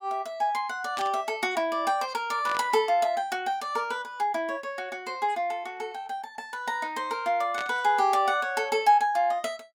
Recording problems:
burst of static; at 1 s, at 2.5 s and at 7.5 s; peak -5 dB vs average level

